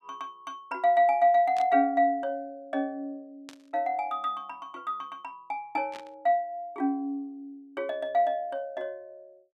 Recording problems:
static burst; at 1.5 s, at 3.5 s and at 6 s; peak -11 dB vs average level

